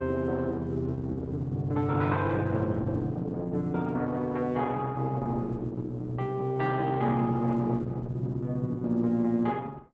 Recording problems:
lossy codec; Opus, log-spectral distance 2 dB, nothing above 7.6 kHz

